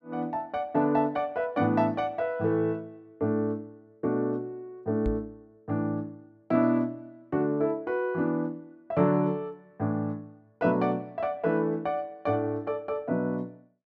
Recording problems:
microphone bump; at 5 s; peak -1 dB vs average level

